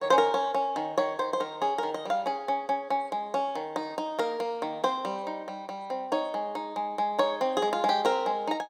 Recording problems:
none

